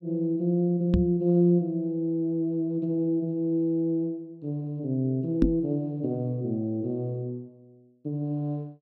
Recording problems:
microphone thump; at 1 s and at 5.5 s; peak +8 dB vs average level

